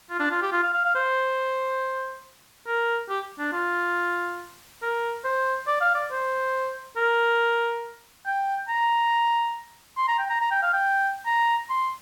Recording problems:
background hiss; slope 0 dB per octave, SNR 27 dB

